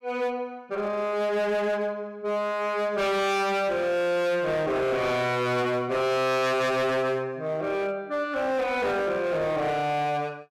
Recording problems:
distortion; hard clipping, signal-to-distortion ratio 7 dB

